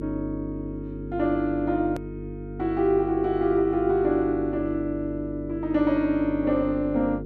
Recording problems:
electrical hum; 50 Hz, harmonics up to 450 Hz, SNR 10 dB
click at an edit; at 2 s

